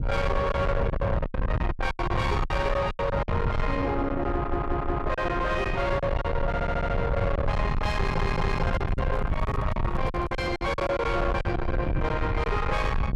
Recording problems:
distortion; soft clipping, signal-to-distortion ratio 7 dB
low-frequency rumble; below 470 Hz, SNR 2 dB
lost packets; 11% of the sound replaced, filled with silence
audio stuttering; at 4.5 s, at 6.5 s and at 8 s
handling noise; from 8 to 11 s; peak -6 dB vs average level

